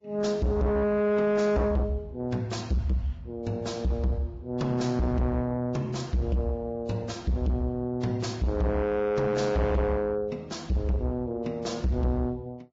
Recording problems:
lossy compression; Vorbis, log-spectral distance 2 dB, nothing above 7.3 kHz
distorted audio; soft clipping, signal-to-distortion ratio 6 dB

